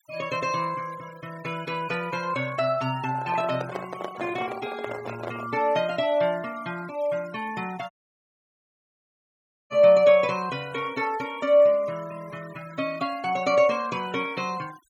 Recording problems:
noise reduction artefacts; signal-to-artefact ratio 20 dB
handling noise; from 3 to 5.5 s; peak -4 dB vs average level
audio cutting out; at 8 s for 2 s

